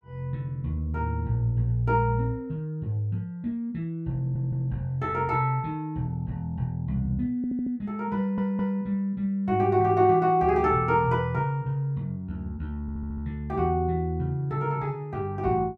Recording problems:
stutter; 4 times, first at 4 s

